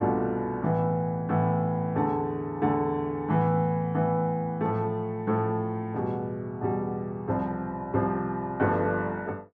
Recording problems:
none

